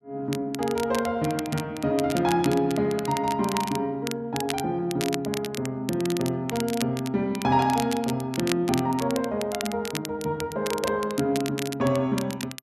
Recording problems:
crackle; vinyl, SNR 10 dB

